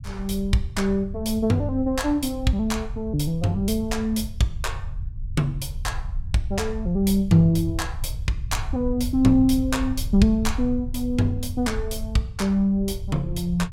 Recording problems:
rumble; below 82 Hz, SNR 9 dB

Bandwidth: 16.5 kHz